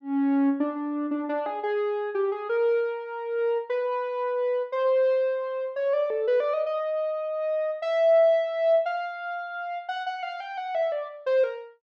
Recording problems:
none

